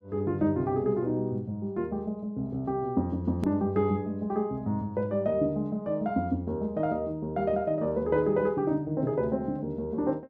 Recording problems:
click at an edit; at 3.5 s

